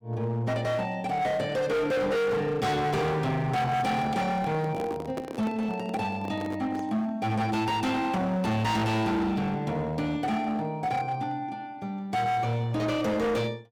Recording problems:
distortion; hard clipping, signal-to-distortion ratio 7 dB
microphone handling noise; from 3.5 to 7 s; peak -2 dB vs average level

